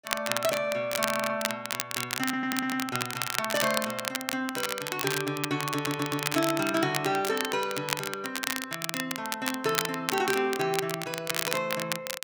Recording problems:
crackle; vinyl, SNR 2 dB
audio stuttering; at 1 s, at 2 s and at 5.5 s

